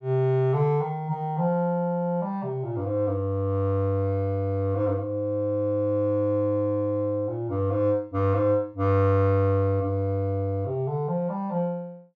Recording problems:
none

